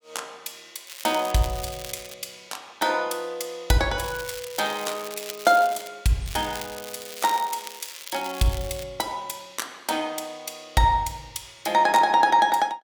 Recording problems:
crackling; from 1 to 2 s, from 4 to 6 s and from 6.5 to 9 s; loose cable, SNR 14 dB

